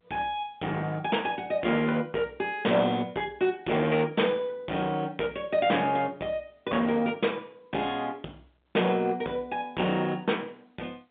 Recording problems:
phone line; 240 Hz to 3.6 kHz, G.711
distorted audio; hard clipping, uneven, signal-to-distortion ratio 10 dB

